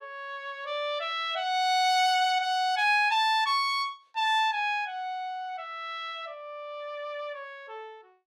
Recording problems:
none

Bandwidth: 16.5 kHz